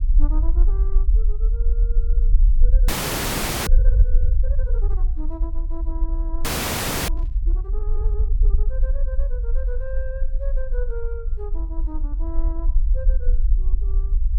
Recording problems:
low-frequency rumble; below 46 Hz, SNR -16 dB
frozen audio; at 3 s for 1 s and at 6.5 s for 0.5 s
burst of static; at 7 s; peak -14 dB vs average level

